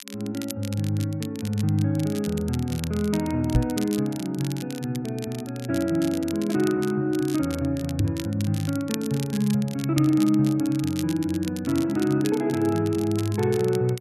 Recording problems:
crackling; vinyl, SNR 15 dB
microphone bump; at 3.5 s and at 8 s; peak +5 dB vs average level

